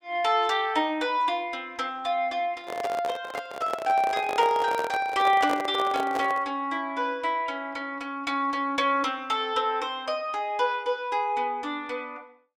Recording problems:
microphone handling noise; from 2.5 to 6.5 s; peak -1 dB vs average level

